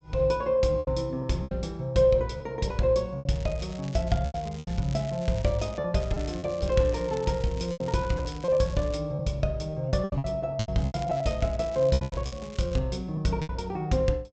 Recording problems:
low-pass filter; nothing above 8 kHz
packet loss; 10% of the sound replaced, filled with repeated pitch periods
crackling; from 3.5 to 6 s, from 6 to 9 s and from 11 to 13 s; loose cable, SNR 21 dB

